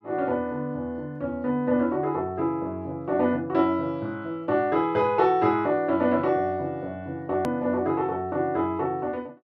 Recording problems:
click at an edit; at 7.5 s

